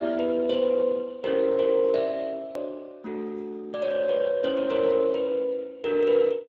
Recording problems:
codec artefacts; Speex, log-spectral distance 3 dB
click at an edit; at 2.5 s

